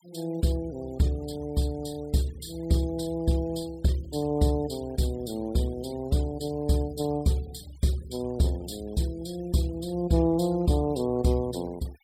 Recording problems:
denoising artefacts; signal-to-artefact ratio 22 dB

